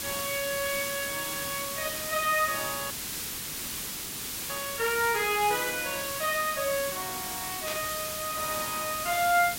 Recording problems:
background hiss; SNR 3 dB
dropout; at 3 s for 1.5 s
static burst; at 7.5 s; peak -3 dB vs average level

